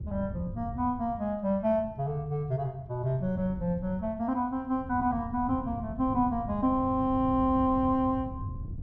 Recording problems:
wind on the microphone; below 140 Hz, SNR 11 dB

